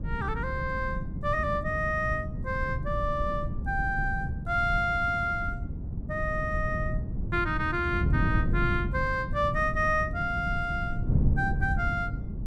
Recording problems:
wind noise; below 150 Hz, SNR 3 dB

